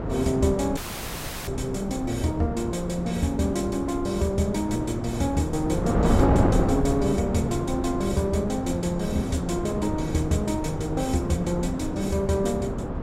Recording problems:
electrical hum; 60 Hz, harmonics up to 480 Hz, SNR 25 dB
wind on the microphone; below 450 Hz, SNR 3 dB
dropout; at 1 s for 0.5 s

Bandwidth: 16 kHz